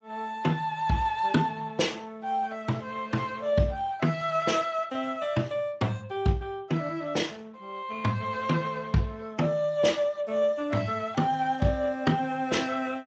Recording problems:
lossy compression; Speex, log-spectral distance 3 dB

